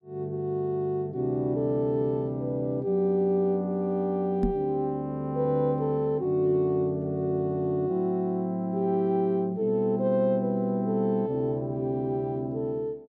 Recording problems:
knock on the microphone; at 4.5 s; peak +3 dB vs average level

